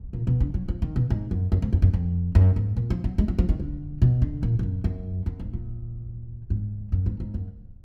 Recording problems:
wind on the microphone; below 86 Hz, SNR 19 dB

